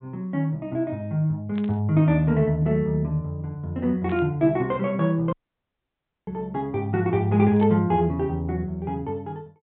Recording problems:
low-pass filter; nothing above 4 kHz
static burst; at 1.5 s, at 4 s and at 7.5 s; peak -15 dB vs average level
audio cutting out; at 5.5 s for 1 s

